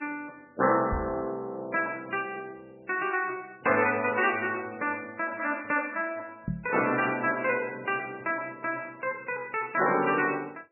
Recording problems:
codec artefacts; MP3, log-spectral distance 4 dB, nothing above 2.4 kHz
microphone thump; at 1 s and at 6.5 s; peak 0 dB vs average level

